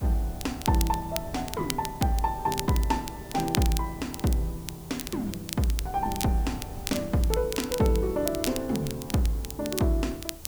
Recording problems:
background hiss; SNR 19 dB
wind noise; below 120 Hz, SNR 16 dB
crackling; vinyl, SNR 9 dB

